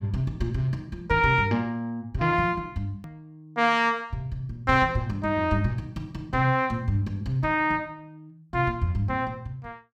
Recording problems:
click at an edit; at 3 s

